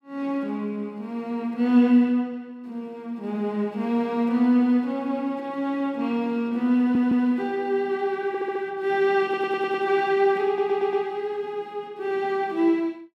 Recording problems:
stutter; 4 times, first at 7 s

